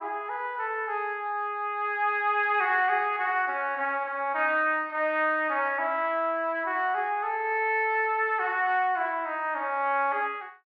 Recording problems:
treble cut off; nothing above 5.5 kHz

